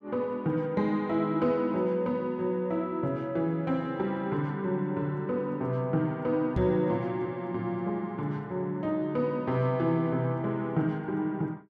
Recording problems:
microphone bump; at 6.5 s; peak +3 dB vs average level

